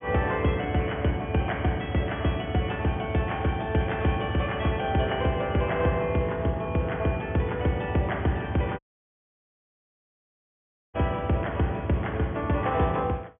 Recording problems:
low-pass filter; nothing above 3.3 kHz
audio cutting out; at 9 s for 2 s

